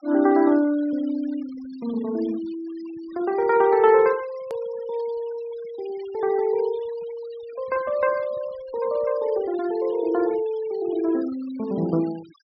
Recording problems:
low-pass filter; nothing above 5.5 kHz
denoising artefacts; signal-to-artefact ratio 23 dB
click at an edit; at 4.5 s

